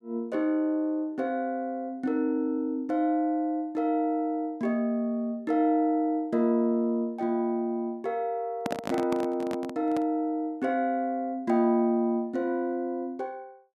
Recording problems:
microphone handling noise; from 8.5 to 10 s; peak 0 dB vs average level

